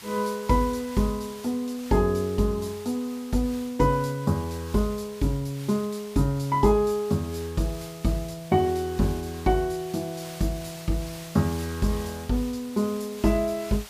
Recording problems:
hiss; slope +1 dB per octave, SNR 17 dB

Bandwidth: 15 kHz